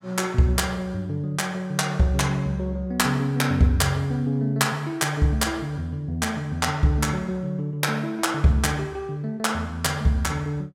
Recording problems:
none

